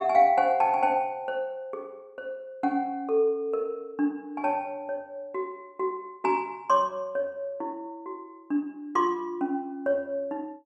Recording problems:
none

